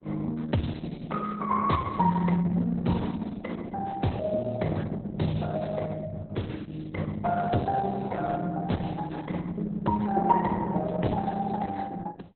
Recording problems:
codec artefacts; Opus, then Opus, log-spectral distance 4 dB, nothing above 4.1 kHz

